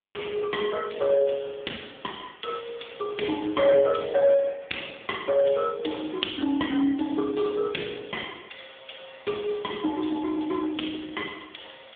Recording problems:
phone line; 170 Hz to 3.5 kHz, AMR-NB

